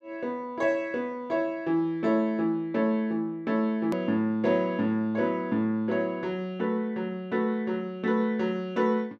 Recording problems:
edit click; at 4 s

